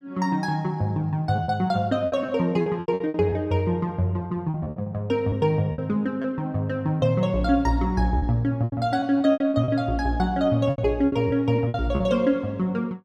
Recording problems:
lost packets; 10% of the sound replaced, filled with repeated pitch periods

